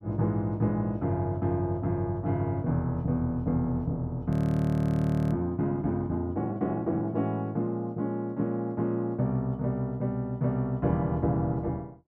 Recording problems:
audio freezing; at 4.5 s for 1 s

